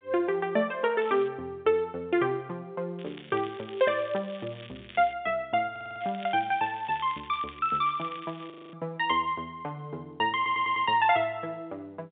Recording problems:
telephone audio; 280 Hz to 3.6 kHz, G.711
crackling; at 1 s, from 3 to 5 s and from 6 to 8.5 s; loose cable, SNR 20 dB
audio stuttering; at 5.5 s and at 10 s
frozen audio; at 8.5 s

